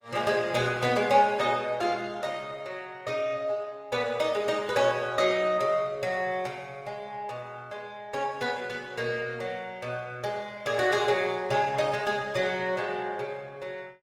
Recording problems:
codec artefacts; Opus, log-spectral distance 3 dB, nothing above 19 kHz

